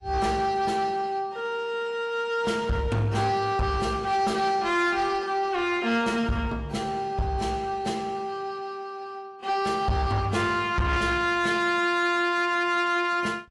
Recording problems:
codec artefacts; AAC, log-spectral distance 2 dB, nothing above 11 kHz
distorted audio; soft clipping, signal-to-distortion ratio 11 dB

